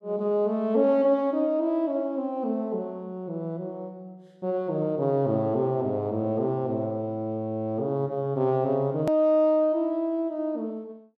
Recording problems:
hard cut with a click; at 9 s

